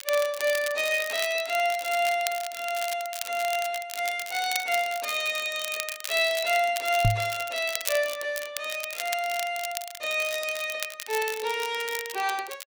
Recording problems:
crackle; vinyl, SNR 9 dB
knock on the microphone; at 7 s; peak +7 dB vs average level

